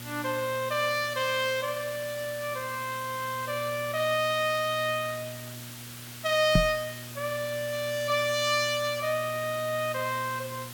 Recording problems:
hum; 60 Hz, harmonics up to 600 Hz, SNR 16 dB
background hiss; slope 0 dB per octave, SNR 13 dB
microphone thump; at 6.5 s; peak +8 dB vs average level

